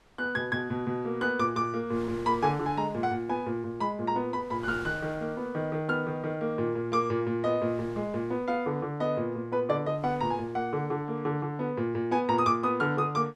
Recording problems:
wind on the microphone; below 1.8 kHz, SNR 22 dB

